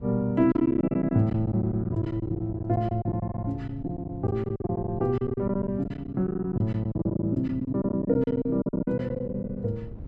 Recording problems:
wind on the microphone; below 170 Hz, SNR 17 dB
packet loss; 16% of the sound replaced, filled with silence

